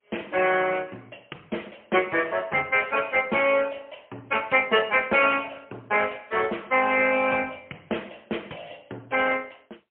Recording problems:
telephone audio; 240 Hz to 3.2 kHz, AMR-NB, then MP3

